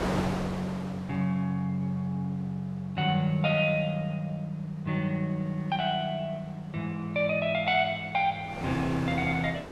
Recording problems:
wind on the microphone; below 1.1 kHz, SNR 12 dB

